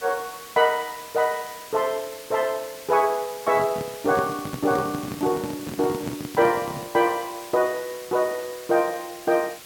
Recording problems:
background hiss; SNR 15 dB
crackling; from 1 to 2.5 s and from 3 to 6.5 s; loose cable, SNR 29 dB
microphone handling noise; from 3.5 to 7 s; peak -3 dB vs average level

